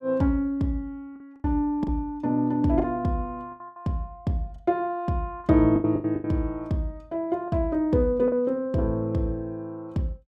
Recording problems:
lost packets; 7% of the sound replaced, filled with the last packet

